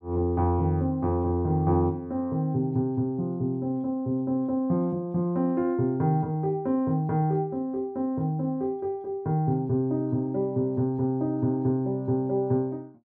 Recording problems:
none

